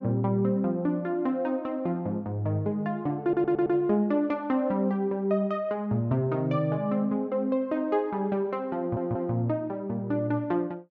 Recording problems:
low-pass filter; nothing above 8 kHz
stutter; at 3 s and at 9 s

